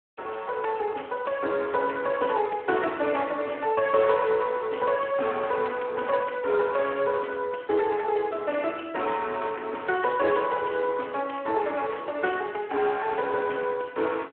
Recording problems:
telephone audio; 260 Hz to 3.3 kHz, Speex

